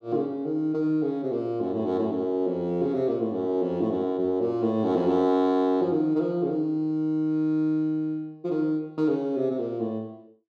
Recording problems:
none

